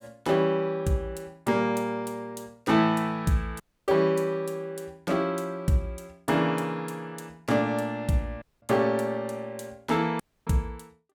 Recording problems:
dropout; at 3.5 s, at 8.5 s and at 10 s

